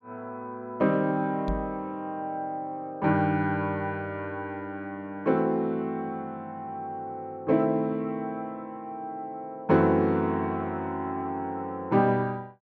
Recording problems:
microphone bump; at 1.5 s; peak +1 dB vs average level

